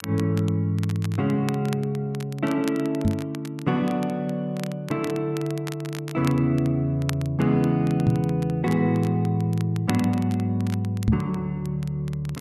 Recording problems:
crackling; vinyl, SNR 18 dB
knock on the microphone; at 3 s, at 8 s and at 11 s; peak +7 dB vs average level

